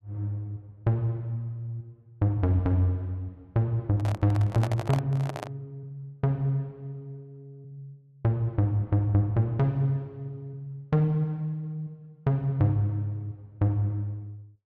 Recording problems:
handling noise; from 4 to 5.5 s; peak 0 dB vs average level

